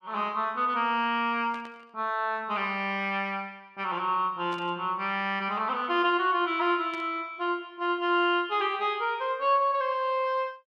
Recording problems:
static burst; at 1.5 s, at 4.5 s and at 7 s; peak -13 dB vs average level

